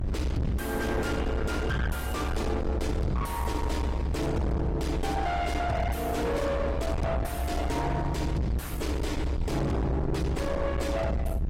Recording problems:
codec artefacts; AAC, log-spectral distance 2 dB, nothing above 15.5 kHz
distortion; soft clipping, signal-to-distortion ratio 6 dB
low-frequency rumble; below 290 Hz, SNR 2 dB

